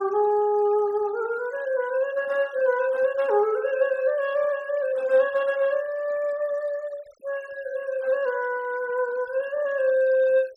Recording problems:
noise reduction artefacts; signal-to-artefact ratio 25 dB

